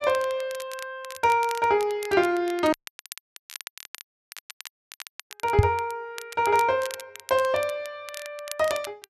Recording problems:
crackle; vinyl, SNR 16 dB
dropout; at 2.5 s for 2.5 s
microphone thump; at 5.5 s; peak +10 dB vs average level

